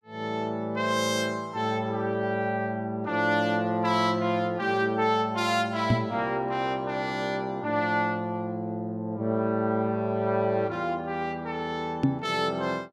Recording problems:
microphone bump; at 6 s and at 12 s; peak +8 dB vs average level

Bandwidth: 14.5 kHz